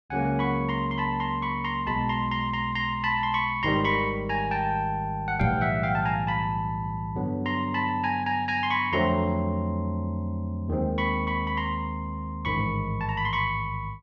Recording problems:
microphone thump; at 5.5 s; peak +5 dB vs average level

